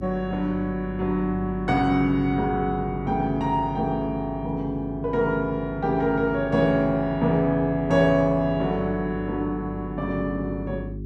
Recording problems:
hum; 50 Hz, harmonics up to 400 Hz, SNR 12 dB

